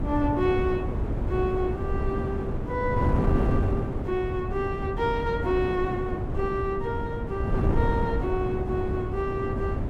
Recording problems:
wind noise; below 270 Hz, SNR 0 dB

